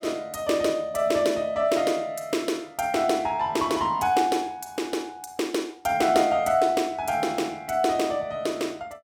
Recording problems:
none

